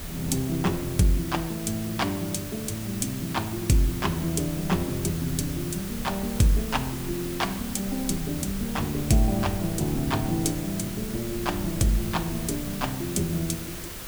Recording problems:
background hiss; SNR 9 dB
wind noise; below 110 Hz, SNR 15 dB

